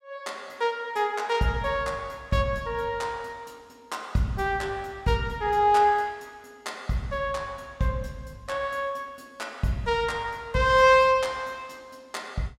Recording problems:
none

